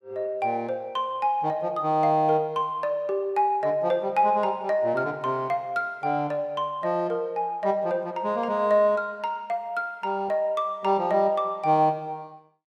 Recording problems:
none

